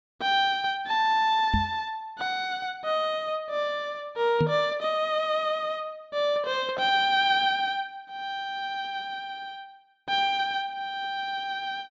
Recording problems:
low-pass filter; nothing above 8 kHz
microphone bump; at 1.5 s and at 4.5 s; peak +4 dB vs average level

